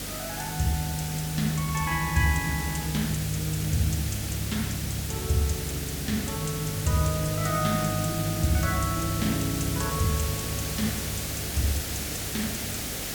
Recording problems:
electrical hum; 50 Hz, harmonics up to 300 Hz, SNR 13 dB
background hiss; SNR 4 dB

